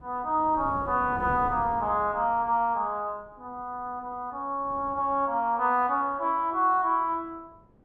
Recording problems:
wind on the microphone; below 420 Hz, SNR 16 dB

